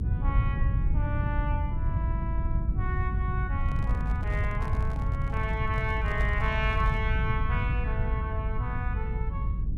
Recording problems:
low-frequency rumble; below 110 Hz, SNR -5 dB
microphone handling noise; from 3.5 to 7 s; peak -4 dB vs average level

